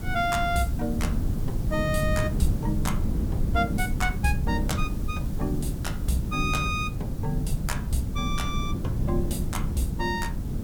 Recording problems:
hiss; SNR 19 dB
rumble; below 160 Hz, SNR 0 dB

